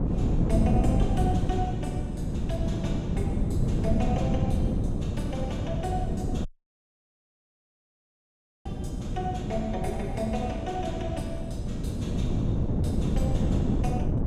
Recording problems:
hum; 60 Hz, harmonics up to 1.2 kHz, SNR 12 dB
wind noise; below 220 Hz, SNR -6 dB
dropout; at 6.5 s for 2 s

